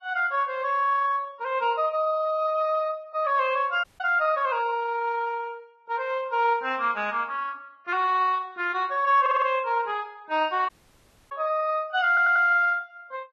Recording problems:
lossy codec; Vorbis, log-spectral distance 2 dB, nothing above 6.3 kHz
dropout; at 4 s and at 11 s for 0.5 s
stutter; at 9 s and at 12 s

